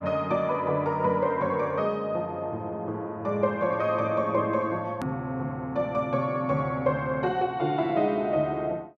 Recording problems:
edit click; at 5 s

